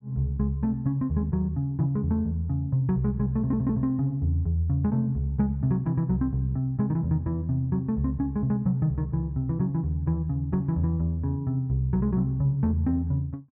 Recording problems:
treble missing; nothing above 5.5 kHz
audio stuttering; at 3.5 s

